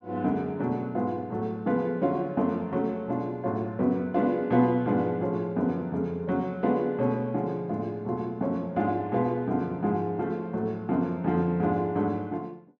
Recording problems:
none

